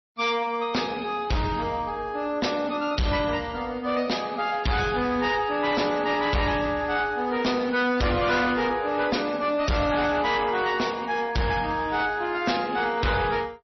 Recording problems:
lossy codec; MP3, then MP3, log-spectral distance 4 dB, nothing above 5.8 kHz
distorted audio; hard clipping, signal-to-distortion ratio 8 dB

